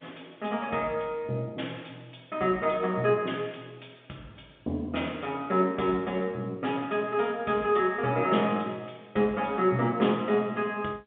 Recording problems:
telephone audio; 170 Hz to 3.6 kHz, G.711

